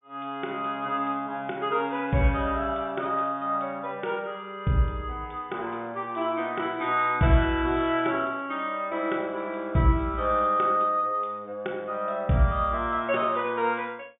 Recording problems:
treble missing; nothing above 3.6 kHz

